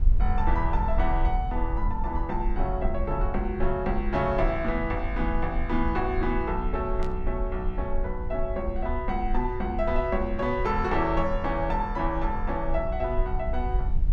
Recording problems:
low-frequency rumble; below 52 Hz, strongest tone 20 Hz, SNR 3 dB
static burst; at 7 s; peak -12 dB vs average level

